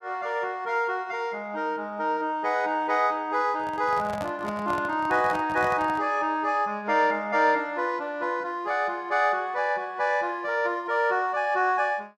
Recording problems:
handling noise; from 3.5 to 6 s; peak -5 dB vs average level

